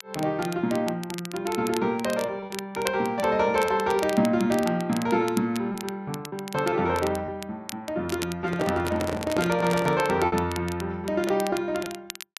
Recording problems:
crackling; vinyl, SNR 14 dB
lost packets; 4% of the sound replaced, filled with repeated pitch periods
microphone handling noise; from 8.5 to 10 s; peak +1 dB vs average level

